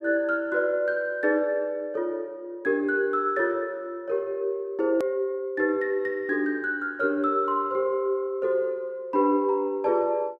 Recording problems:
hard cut with a click; at 5 s

